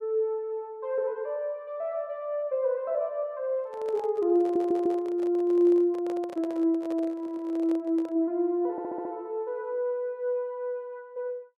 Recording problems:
microphone handling noise; from 3.5 to 8 s; peak -8 dB vs average level
audio stuttering; at 4.5 s, at 7 s and at 8.5 s

